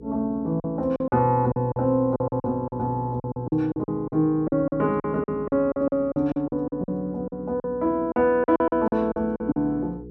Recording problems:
electrical hum; 60 Hz, harmonics up to 480 Hz, SNR 20 dB
lost packets; 15% of the sound replaced, filled with silence

